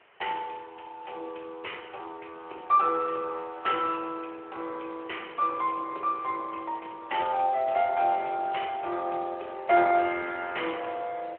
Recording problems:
phone line; 320 Hz to 3.1 kHz, Speex
background hiss; SNR 27 dB

